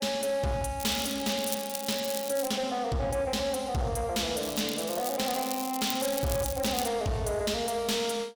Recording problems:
distorted audio; soft clipping, signal-to-distortion ratio 10 dB
crackling; from 1 to 2.5 s and from 4.5 to 7 s; loose cable, SNR 7 dB

